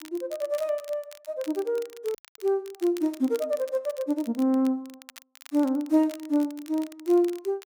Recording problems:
crackle; vinyl, SNR 21 dB
audio cutting out; at 2 s

